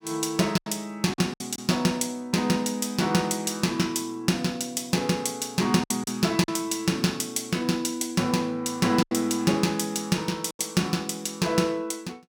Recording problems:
lost packets; 4% of the sound replaced, filled with silence

